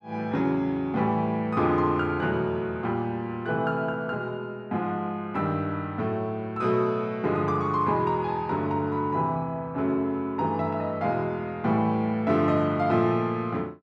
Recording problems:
none

